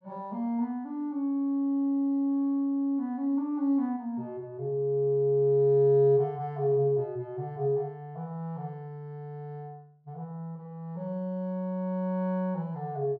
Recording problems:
none

